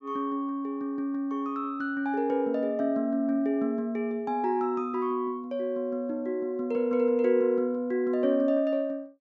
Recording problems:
treble cut off; nothing above 8 kHz

